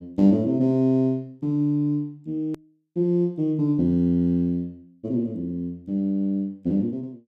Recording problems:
click at an edit; at 2.5 s

